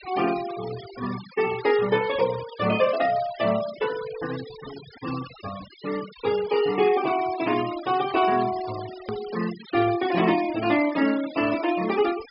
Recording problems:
low-pass filter; nothing above 5.3 kHz
denoising artefacts; signal-to-artefact ratio 15 dB
click at an edit; at 9 s

